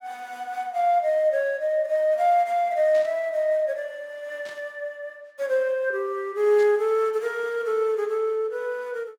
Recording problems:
static burst; at 3 s, at 4.5 s and at 6.5 s; peak -16 dB vs average level

